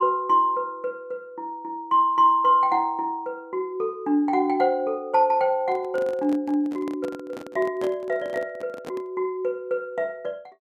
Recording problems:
microphone handling noise; from 5.5 to 9 s; peak -8 dB vs average level

